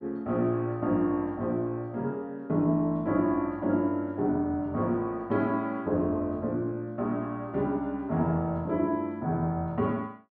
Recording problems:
none

